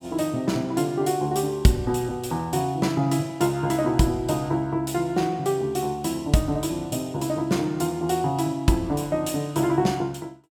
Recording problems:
none

